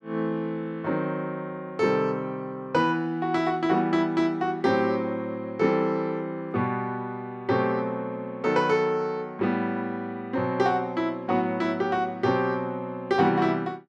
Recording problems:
none

